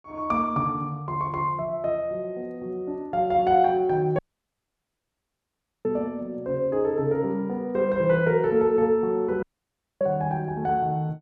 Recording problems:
audio cutting out; at 4 s for 1.5 s and at 9.5 s for 0.5 s

